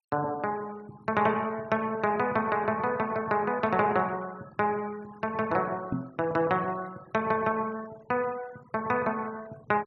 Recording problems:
denoising artefacts; signal-to-artefact ratio 23 dB
microphone thump; at 6 s; peak +2 dB vs average level

